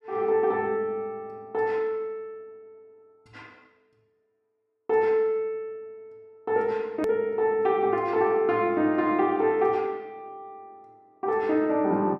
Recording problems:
edit click; at 7 s

